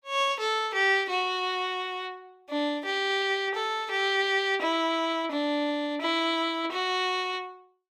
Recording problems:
none

